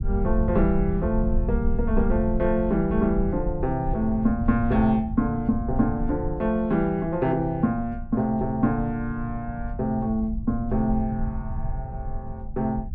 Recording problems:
rumble; below 78 Hz, SNR 7 dB

